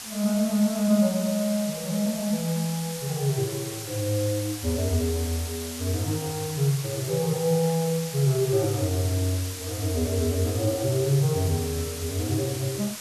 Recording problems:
background hiss; slope +1 dB per octave, SNR 9 dB

